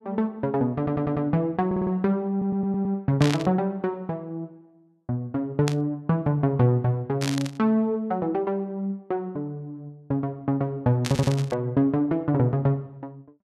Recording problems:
audio stuttering; 4 times, first at 1 s
burst of static; 4 times, first at 3 s; peak -1 dB vs average level

